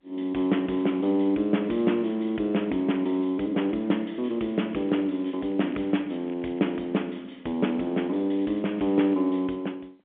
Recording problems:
telephone audio; 190 Hz to 3.3 kHz, G.711
crackling; from 4 to 7 s and at 8.5 s; loose cable, SNR 30 dB

